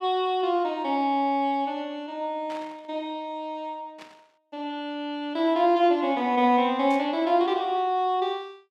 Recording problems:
static burst; at 2.5 s, at 4 s and at 7 s; peak -14 dB vs average level

